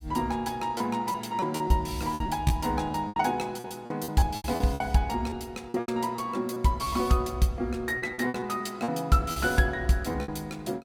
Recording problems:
lost packets; 11% of the sound replaced, filled with repeated pitch periods

